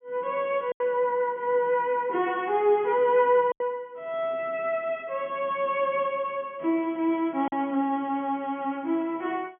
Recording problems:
low-pass filter; nothing above 3.3 kHz
lost packets; 2% of the sound replaced, filled with silence

